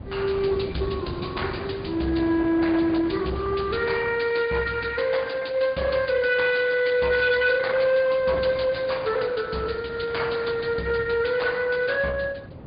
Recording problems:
treble cut off; nothing above 4.8 kHz
lossy compression; Opus, log-spectral distance 4 dB
distortion; hard clipping, uneven, signal-to-distortion ratio 11 dB
wind on the microphone; below 370 Hz, SNR 15 dB

